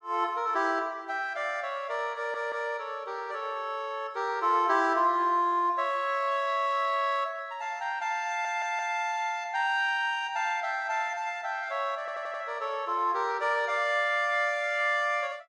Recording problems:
stutter; at 2 s, at 8.5 s and at 12 s

